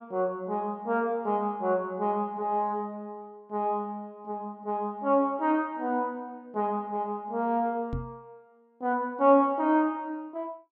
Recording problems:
microphone thump; at 8 s; peak -2 dB vs average level

